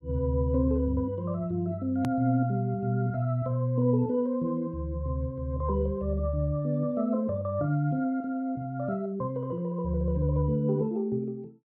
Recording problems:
click at an edit; at 2 s

